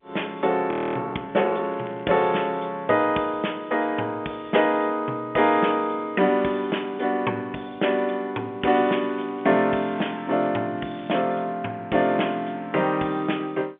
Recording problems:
phone line; 190 Hz to 3.4 kHz, G.711
frozen audio; at 0.5 s
crackle; at 1.5 s, from 8.5 to 10 s and at 11 s; loose cable, SNR 28 dB

